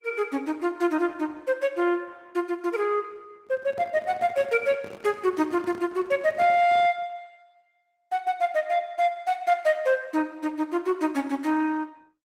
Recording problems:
lossy codec; Opus, log-spectral distance 2 dB, nothing above 16 kHz
handling noise; from 3.5 to 7 s; peak -10 dB vs average level

